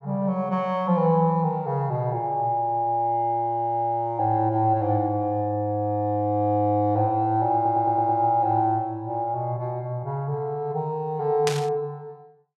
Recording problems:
stutter; at 7.5 s
burst of static; at 11 s; peak 0 dB vs average level

